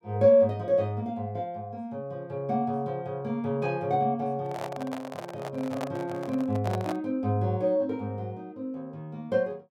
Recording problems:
handling noise; from 4.5 to 7 s; peak -2 dB vs average level

